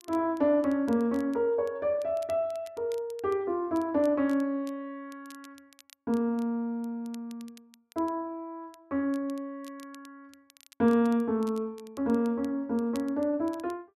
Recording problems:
crackle; vinyl, SNR 27 dB

